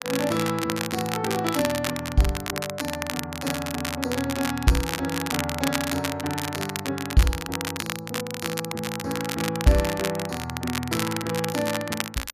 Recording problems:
crackling; vinyl, SNR 4 dB

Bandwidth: 14.5 kHz